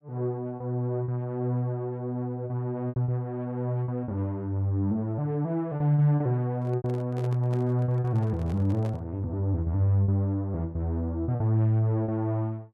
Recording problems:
packet loss; 5% of the sound replaced, filled with repeated pitch periods
microphone handling noise; from 6.5 to 9 s; peak -10 dB vs average level

